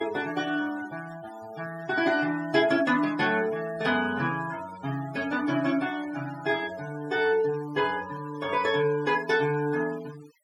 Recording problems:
denoising artefacts; signal-to-artefact ratio 17 dB

